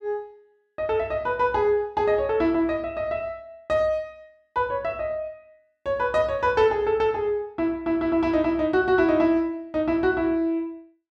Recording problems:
none

